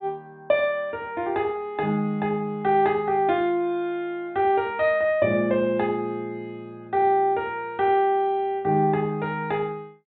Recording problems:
treble cut off; nothing above 4 kHz

